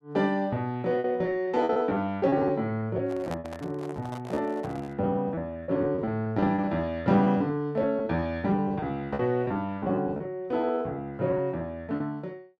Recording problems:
packet loss; 16% of the sound replaced, filled with repeated pitch periods
handling noise; from 3 to 5 s; peak -5 dB vs average level

